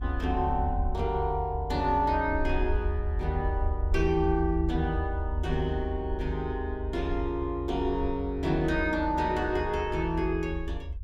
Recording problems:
rumble; below 78 Hz, SNR 4 dB

